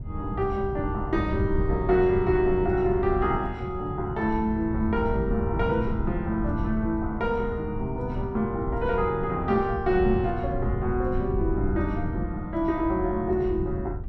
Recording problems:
wind noise; below 120 Hz, SNR 6 dB

